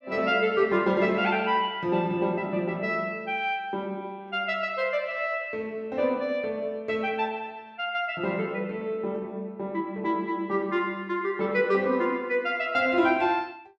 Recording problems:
none

